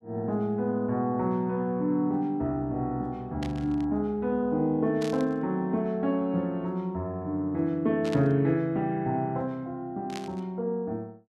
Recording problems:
static burst; 4 times, first at 3.5 s; peak -7 dB vs average level

